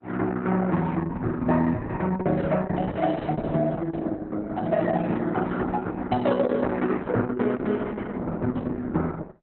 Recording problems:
lossy compression; Opus, log-spectral distance 3 dB, nothing above 4 kHz

